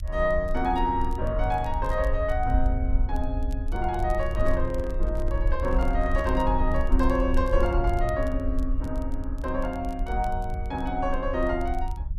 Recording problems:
low-frequency rumble; below 56 Hz, SNR 2 dB
crackling; vinyl, SNR 28 dB
handling noise; from 4 to 6.5 s; peak -6 dB vs average level

